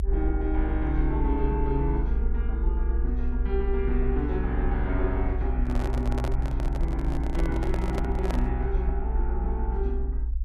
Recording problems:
rumble; below 58 Hz, strongest tone 58 Hz, SNR -2 dB
microphone handling noise; from 5.5 to 8.5 s; peak +1 dB vs average level

